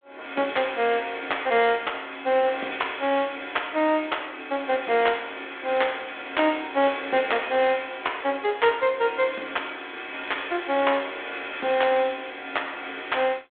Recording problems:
phone line; 240 Hz to 3.6 kHz, G.726

